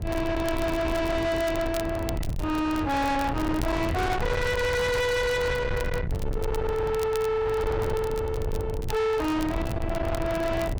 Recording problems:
distortion; soft clipping, signal-to-distortion ratio 6 dB
rumble; below 540 Hz, SNR 5 dB
wind noise; below 670 Hz, SNR 14 dB
crackling; vinyl, SNR 20 dB

